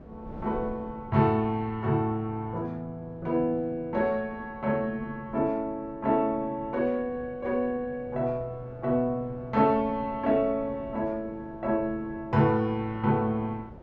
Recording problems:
wind on the microphone; below 430 Hz, SNR 19 dB

